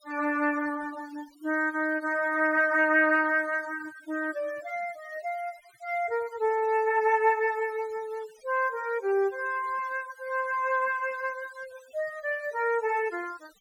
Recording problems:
denoising artefacts; signal-to-artefact ratio 24 dB

